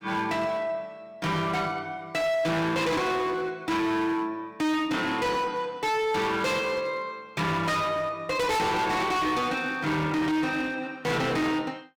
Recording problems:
distorted audio; hard clipping, signal-to-distortion ratio 6 dB

